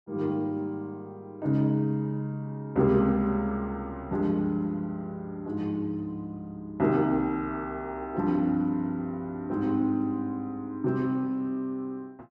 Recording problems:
none

